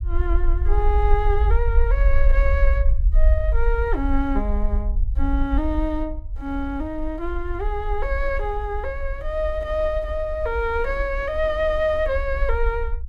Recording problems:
rumble; below 54 Hz, SNR 0 dB

